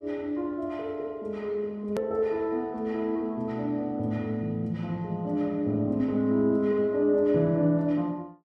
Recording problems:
edit click; at 2 s

